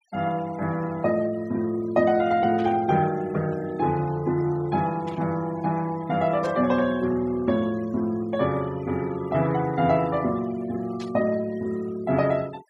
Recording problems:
noise reduction artefacts; signal-to-artefact ratio 23 dB
burst of static; 4 times, first at 2.5 s; peak -14 dB vs average level

